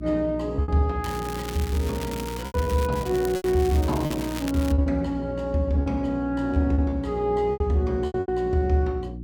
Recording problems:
electrical hum; 60 Hz, harmonics up to 360 Hz, SNR 11 dB
packet loss; 8% of the sound replaced, filled with repeated pitch periods
crackle; from 1 to 3 s and from 3 to 4.5 s; loose cable, SNR 14 dB

